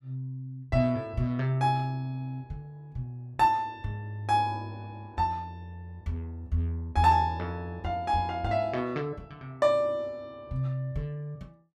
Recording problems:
none

